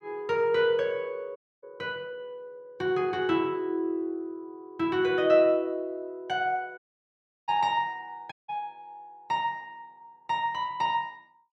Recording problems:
audio cutting out; at 1.5 s, at 7 s for 0.5 s and at 8.5 s

